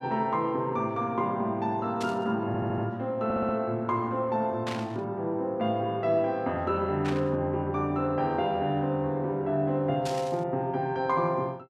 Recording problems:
burst of static; 4 times, first at 2 s; peak -4 dB vs average level
audio stuttering; at 2.5 s and at 3 s

